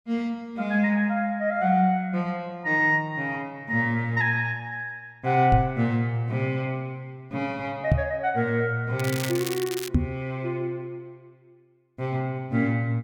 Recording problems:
microphone bump; at 5.5 s, at 8 s and at 10 s; peak +8 dB vs average level
crackle; at 9 s; loose cable, SNR 9 dB

